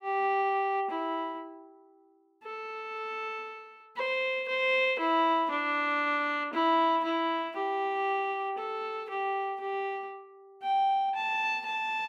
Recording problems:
none

